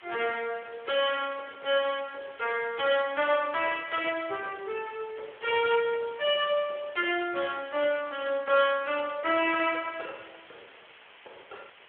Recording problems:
phone line; 370 Hz to 3.4 kHz, Speex
background hiss; SNR 22 dB

